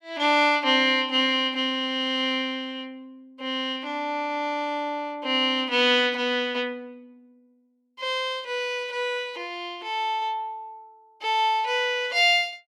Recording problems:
none

